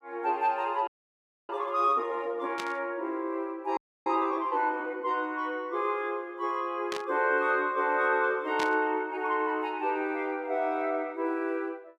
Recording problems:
frozen audio; at 1 s for 0.5 s and at 4 s
static burst; at 2.5 s, at 7 s and at 8.5 s; peak -2 dB vs average level

